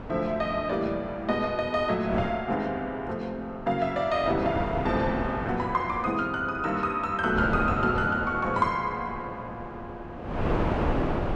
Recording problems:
wind noise; below 720 Hz, SNR 6 dB

